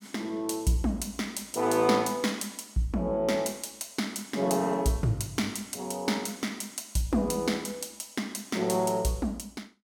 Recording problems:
none

